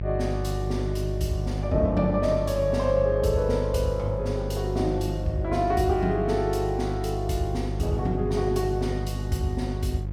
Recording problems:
electrical hum; 50 Hz, harmonics up to 500 Hz, SNR 4 dB

